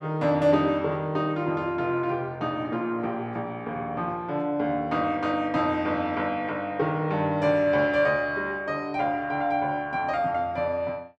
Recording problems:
none

